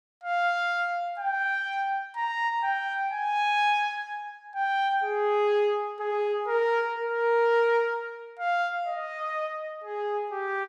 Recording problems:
none

